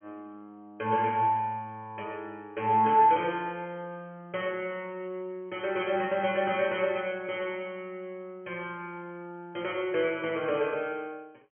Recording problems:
phone line; 190 Hz to 3.3 kHz, G.726

